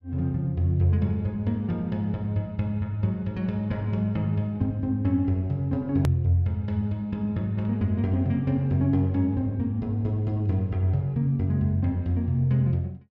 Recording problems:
hard cut with a click; at 6 s

